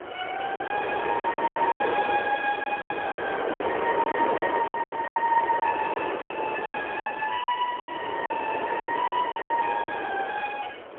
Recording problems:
telephone audio; 390 Hz to 3.3 kHz, AMR-NB, then MP3
wind noise; below 1.1 kHz, SNR 3 dB
lost packets; 14% of the sound replaced, filled with silence

